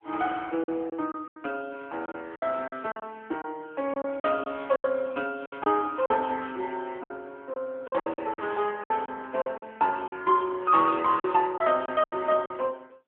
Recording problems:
phone line; 280 Hz to 3.4 kHz, AMR-NB
packet loss; 10% of the sound replaced, filled with silence

